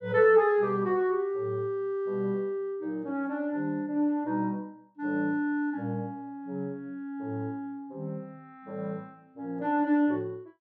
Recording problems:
none

